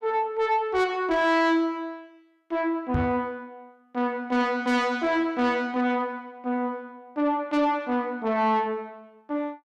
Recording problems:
distortion; soft clipping, signal-to-distortion ratio 11 dB
microphone thump; at 3 s; peak +3 dB vs average level

